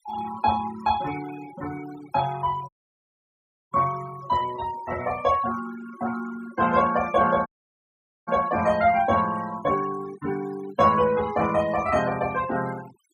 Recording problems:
denoising artefacts; signal-to-artefact ratio 16 dB
dropout; at 2.5 s for 1 s and at 7.5 s for 1 s

